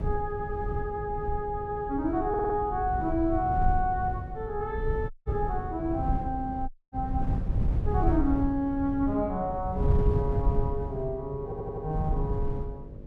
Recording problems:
hum; 50 Hz, harmonics up to 600 Hz, SNR 15 dB
wind on the microphone; below 110 Hz, SNR 3 dB
stutter; at 2.5 s and at 11 s
audio cutting out; at 5 s and at 6.5 s

